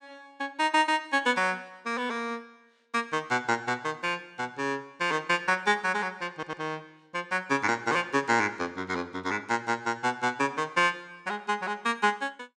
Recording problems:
audio stuttering; at 6.5 s

